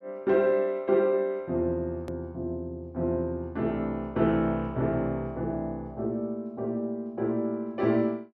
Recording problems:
hard cut with a click; at 2 s

